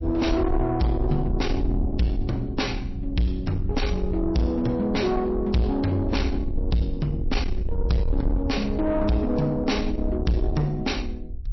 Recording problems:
lossy codec; MP3, log-spectral distance 2 dB, nothing above 5.8 kHz
distortion; soft clipping, signal-to-distortion ratio 7 dB
low-frequency rumble; below 74 Hz, SNR 5 dB

